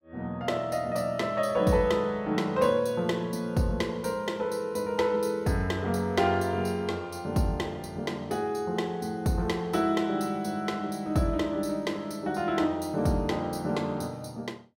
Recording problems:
none

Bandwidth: 16.5 kHz